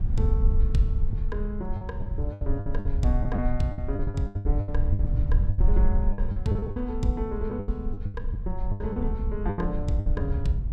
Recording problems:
rumble; below 74 Hz, SNR -3 dB
packet loss; 15% of the sound replaced, filled with the last packet

